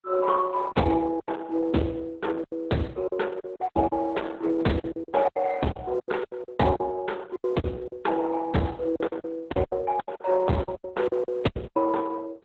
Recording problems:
lossy codec; Opus, then Opus, log-spectral distance 3 dB, nothing above 7.6 kHz
packet loss; 15% of the sound replaced, filled with silence

